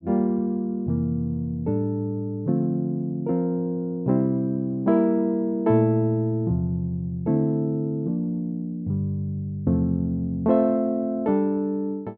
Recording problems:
none

